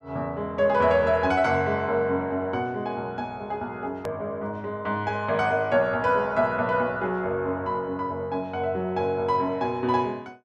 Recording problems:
click at an edit; at 4 s

